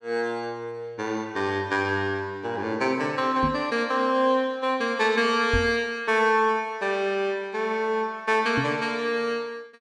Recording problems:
microphone thump; at 3.5 s, at 5.5 s and at 8.5 s; peak +1 dB vs average level

